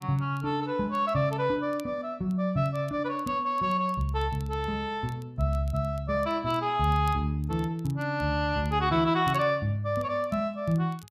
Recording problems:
crackling; vinyl, SNR 28 dB

